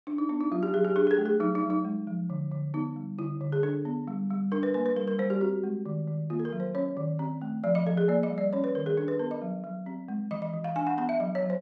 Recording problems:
none

